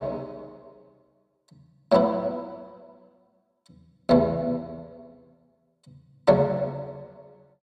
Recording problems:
none

